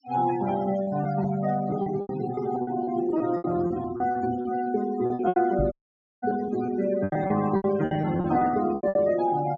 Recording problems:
treble missing; nothing above 8 kHz
denoising artefacts; signal-to-artefact ratio 14 dB
packet loss; 14% of the sound replaced, filled with repeated pitch periods
microphone thump; at 5.5 s; peak +1 dB vs average level
audio cutting out; at 5.5 s for 0.5 s

